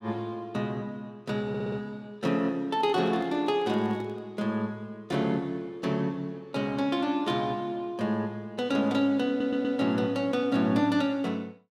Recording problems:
audio stuttering; at 1.5 s and at 9.5 s
handling noise; from 2.5 to 4.5 s; peak -12 dB vs average level

